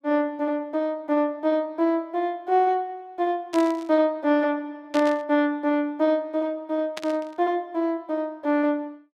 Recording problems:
burst of static; at 3.5 s, at 5 s and at 7 s; peak -5 dB vs average level

